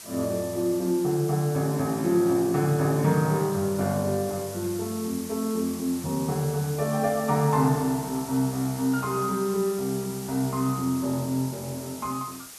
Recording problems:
background hiss; slope 0 dB per octave, SNR 13 dB

